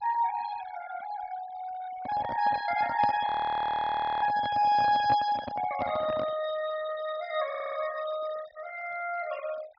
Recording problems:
treble cut off; nothing above 5.5 kHz
noise reduction artefacts; signal-to-artefact ratio 15 dB
handling noise; from 2 to 6.5 s; peak -2 dB vs average level
audio freezing; at 3.5 s for 1 s
audio stuttering; at 7.5 s

